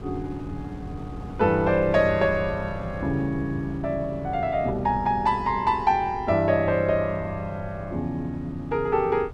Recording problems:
wind on the microphone; below 220 Hz, SNR 15 dB

